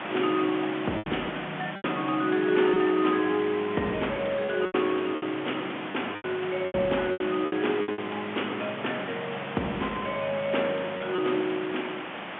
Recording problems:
telephone audio; 190 Hz to 3.4 kHz, G.711
hiss; SNR 8 dB
packet loss; 7% of the sound replaced, filled with repeated pitch periods

